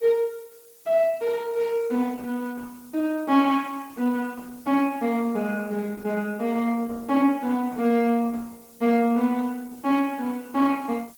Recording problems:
lossy compression; Opus, log-spectral distance 4 dB
background hiss; SNR 25 dB

